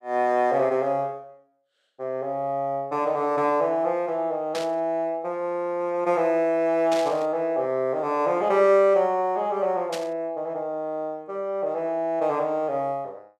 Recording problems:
static burst; at 4.5 s, at 7 s and at 10 s; peak -5 dB vs average level

